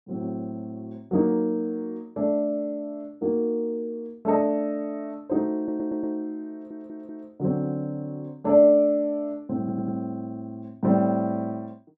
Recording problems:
audio stuttering; at 5.5 s, at 6.5 s and at 9.5 s

